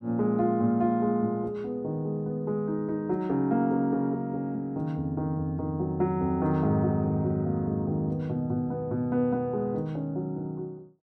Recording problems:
none

